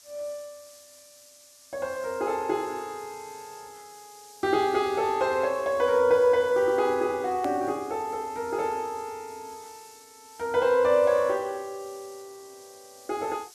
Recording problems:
background hiss; SNR 23 dB
edit click; at 7.5 s

